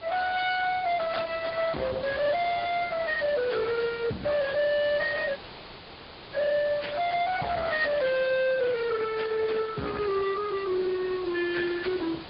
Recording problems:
low-pass filter; nothing above 4.9 kHz
lossy compression; Opus, then Speex, log-spectral distance 5 dB
distortion; soft clipping, signal-to-distortion ratio 6 dB
hiss; SNR 16 dB
audio cutting out; at 5.5 s for 1 s

